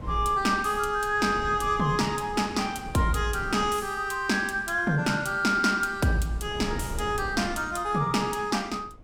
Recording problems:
wind on the microphone; below 210 Hz, SNR 16 dB

